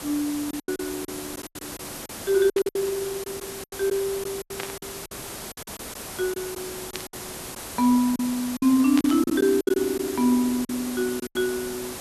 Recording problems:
background hiss; slope -3 dB per octave, SNR 10 dB
packet loss; 12% of the sound replaced, filled with silence
static burst; 4 times, first at 2.5 s; peak -2 dB vs average level

